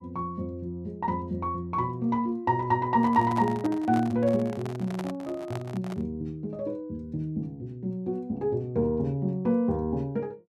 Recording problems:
handling noise; from 3 to 6 s; peak -5 dB vs average level

